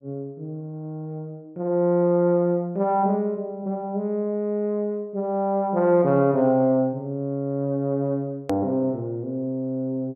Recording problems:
hard cut with a click; at 8.5 s

